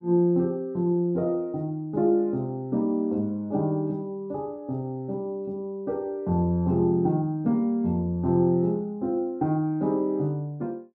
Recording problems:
none

